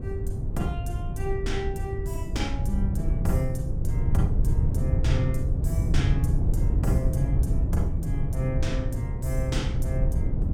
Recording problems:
wind noise; below 110 Hz, SNR -5 dB

